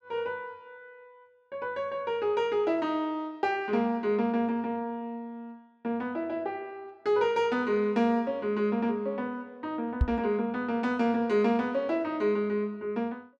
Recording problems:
knock on the microphone; at 10 s; peak +7 dB vs average level

